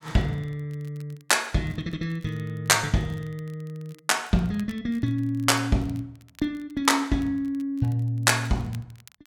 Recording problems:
crackle; vinyl, SNR 29 dB

